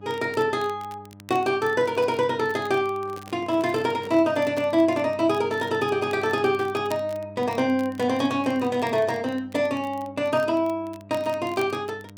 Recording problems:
hum; 50 Hz, harmonics up to 1 kHz, SNR 20 dB
crackling; vinyl, SNR 25 dB
handling noise; from 3 to 4.5 s; peak -10 dB vs average level

